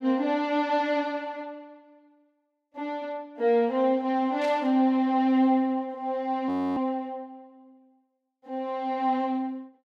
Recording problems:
static burst; at 4.5 s; peak -12 dB vs average level
frozen audio; at 6.5 s

